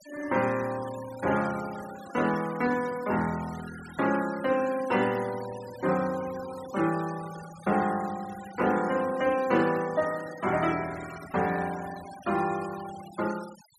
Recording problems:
noise reduction artefacts; signal-to-artefact ratio 16 dB

